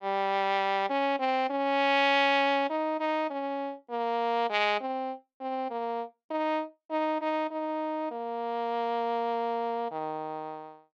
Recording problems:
none

